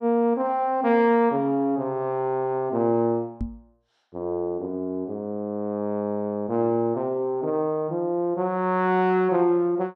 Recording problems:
knock on the microphone; at 3.5 s; peak -2 dB vs average level

